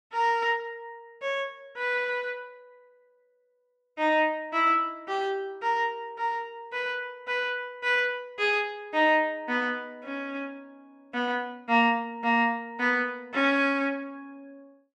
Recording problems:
none

